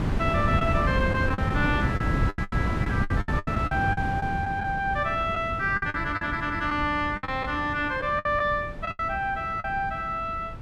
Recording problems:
wind noise; below 240 Hz, SNR 3 dB
lost packets; 11% of the sound replaced, filled with the last packet

